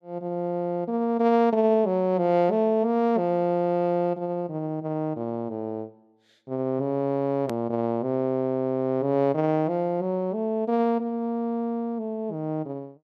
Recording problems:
hard cut with a click; at 7.5 s

